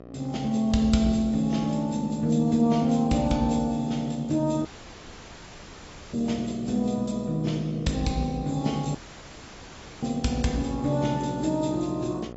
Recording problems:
codec artefacts; AAC, log-spectral distance 6 dB, nothing above 7.6 kHz
hum; 60 Hz, harmonics up to 1.9 kHz, SNR 18 dB
audio cutting out; at 4.5 s for 1.5 s and at 9 s for 1 s

